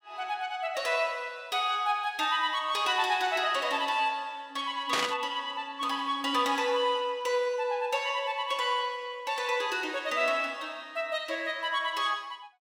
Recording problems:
static burst; at 5 s; peak +4 dB vs average level

